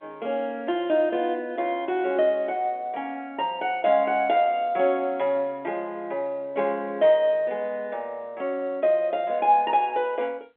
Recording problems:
phone line; 340 Hz to 3.5 kHz, G.711

